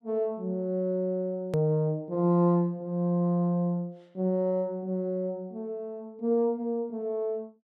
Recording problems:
hard cut with a click; at 1.5 s

